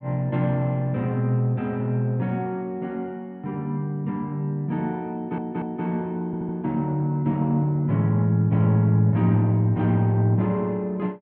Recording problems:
audio stuttering; at 5 s and at 6.5 s

